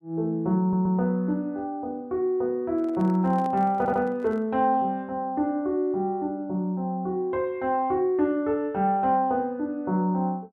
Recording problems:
stutter; at 0.5 s and at 4 s
handling noise; from 2.5 to 4.5 s; peak -11 dB vs average level

